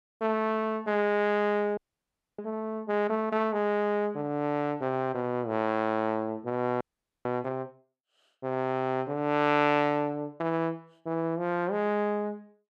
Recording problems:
frozen audio; at 2 s for 0.5 s and at 7 s

